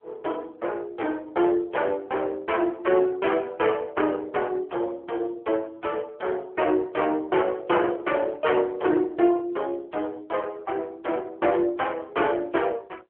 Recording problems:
telephone audio; 280 Hz to 3.2 kHz, AMR-NB

